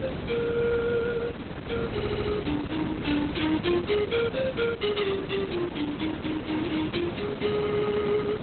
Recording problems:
codec artefacts; Opus, log-spectral distance 7 dB, nothing above 4 kHz
background hiss; SNR 6 dB
audio stuttering; at 2 s

